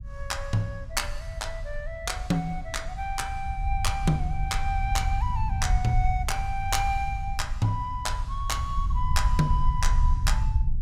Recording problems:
low-frequency rumble; below 70 Hz, SNR 1 dB

